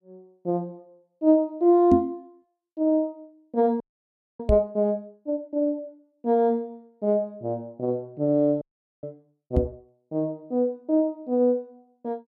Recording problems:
knock on the microphone; at 2 s, at 4.5 s and at 9.5 s; peak +8 dB vs average level
frozen audio; at 4 s for 0.5 s and at 8.5 s

